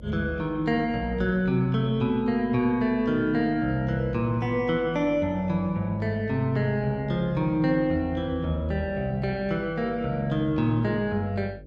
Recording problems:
hum; 50 Hz, harmonics up to 600 Hz, SNR 20 dB

